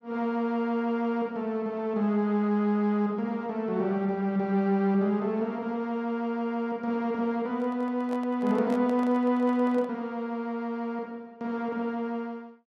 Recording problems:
microphone handling noise; from 7.5 to 10 s; peak -8 dB vs average level

